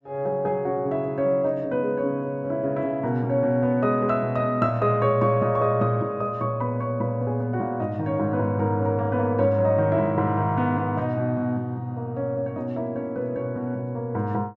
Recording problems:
none

